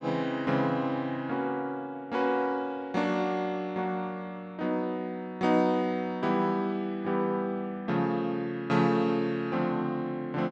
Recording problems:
none

